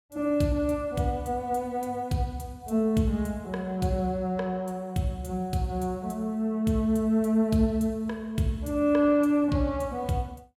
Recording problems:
none

